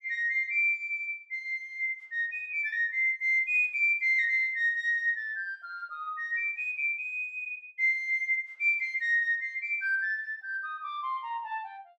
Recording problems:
none

